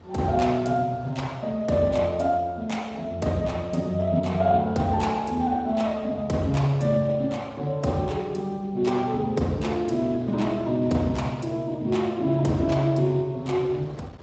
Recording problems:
codec artefacts; Speex, log-spectral distance 3 dB, nothing above 7.6 kHz
wind on the microphone; below 690 Hz, SNR 22 dB

